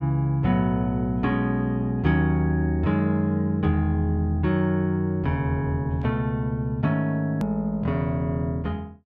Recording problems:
edit click; at 7.5 s

